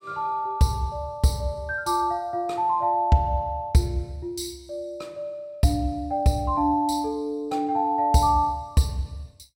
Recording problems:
none

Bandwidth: 16.5 kHz